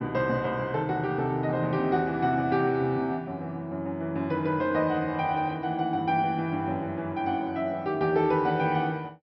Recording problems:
treble cut off; nothing above 5.6 kHz

